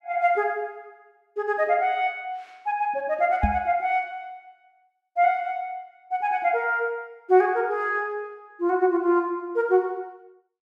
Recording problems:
microphone bump; at 3.5 s; peak +5 dB vs average level

